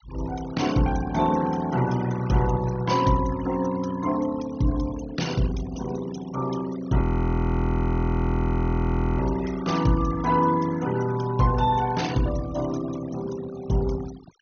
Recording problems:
treble missing; nothing above 6.4 kHz
noise reduction artefacts; signal-to-artefact ratio 16 dB
frozen audio; at 7 s for 2 s

